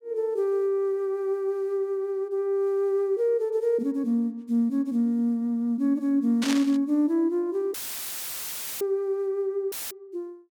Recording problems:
burst of static; at 6.5 s; peak -1 dB vs average level
dropout; at 7.5 s for 1 s and at 9.5 s; filled with static

